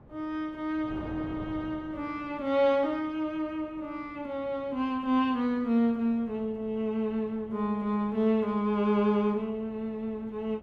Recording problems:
wind on the microphone; below 510 Hz, SNR 20 dB

